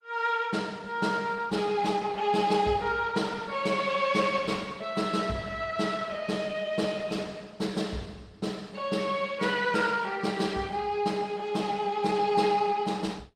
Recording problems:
codec artefacts; Opus, log-spectral distance 4 dB, nothing above 18.3 kHz

